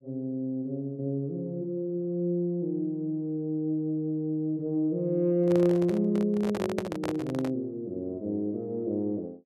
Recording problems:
microphone handling noise; from 5.5 to 7.5 s; peak +1 dB vs average level

